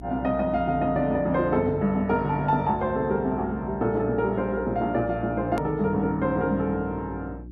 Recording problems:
mains hum; 60 Hz, harmonics up to 360 Hz, SNR 16 dB
edit click; at 5.5 s

